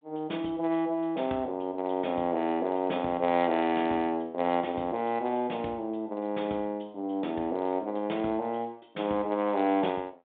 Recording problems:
phone line; 150 Hz to 3.8 kHz, G.726

